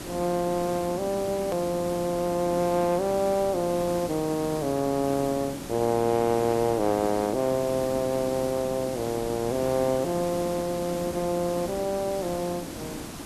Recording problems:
background hiss; SNR 10 dB
edit click; at 1.5 s

